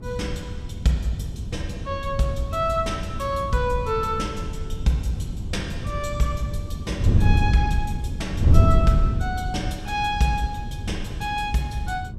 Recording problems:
wind on the microphone; below 110 Hz, SNR 0 dB

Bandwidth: 14.5 kHz